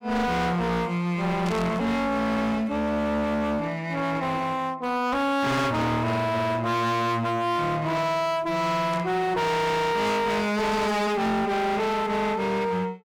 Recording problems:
distorted audio; hard clipping, uneven, signal-to-distortion ratio 5 dB
static burst; at 1.5 s and at 9 s; peak -11 dB vs average level

